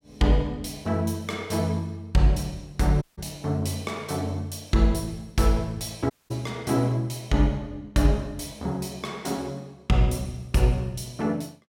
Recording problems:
audio cutting out; at 3 s and at 6 s

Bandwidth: 16.5 kHz